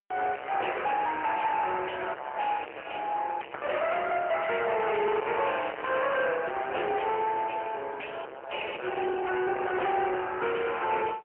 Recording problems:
phone line; 320 Hz to 3 kHz, AMR-NB, then MP3
distorted audio; soft clipping, signal-to-distortion ratio 7 dB

